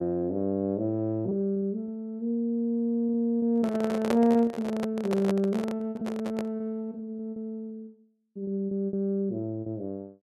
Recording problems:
lost packets; 9% of the sound replaced, filled with repeated pitch periods
microphone handling noise; from 3.5 to 6.5 s; peak +4 dB vs average level

